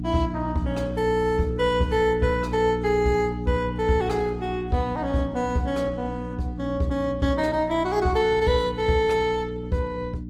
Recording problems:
codec artefacts; Opus, log-spectral distance 2 dB, nothing above 19 kHz
hum; 60 Hz, harmonics up to 300 Hz, SNR 9 dB

